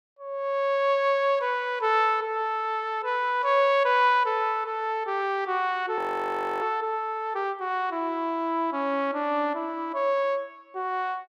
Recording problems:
audio freezing; at 6 s for 0.5 s

